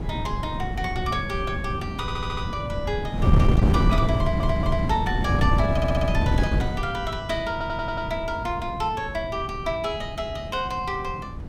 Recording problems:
wind noise; below 180 Hz, SNR -2 dB
audio stuttering; 4 times, first at 2 s

